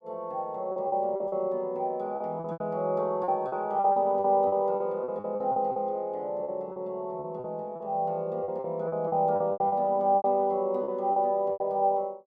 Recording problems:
packet loss; 13% of the sound replaced, filled with repeated pitch periods

